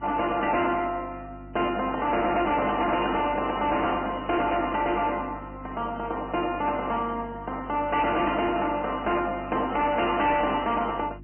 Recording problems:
treble missing; nothing above 2.5 kHz
codec artefacts; MP3, log-spectral distance 3 dB
distorted audio; soft clipping, signal-to-distortion ratio 11 dB
hum; 50 Hz, harmonics up to 350 Hz, SNR 18 dB

